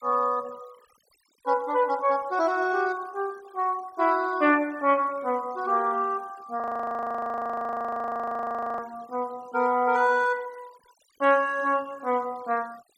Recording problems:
denoising artefacts; signal-to-artefact ratio 26 dB
audio freezing; at 6.5 s for 2 s

